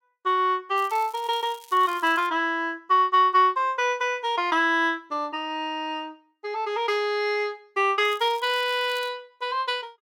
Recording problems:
crackle; from 1 to 2.5 s and from 8 to 9 s; loose cable, SNR 24 dB

